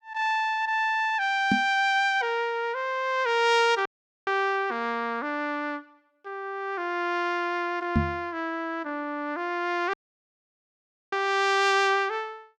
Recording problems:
knock on the microphone; at 1.5 s and at 8 s; peak +6 dB vs average level
dropout; at 4 s and at 10 s for 1 s

